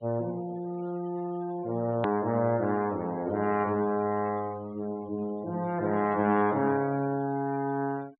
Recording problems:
treble missing; nothing above 4 kHz
denoising artefacts; signal-to-artefact ratio 23 dB
click at an edit; at 2 s

